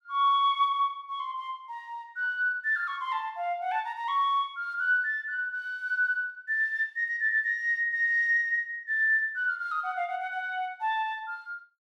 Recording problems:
none

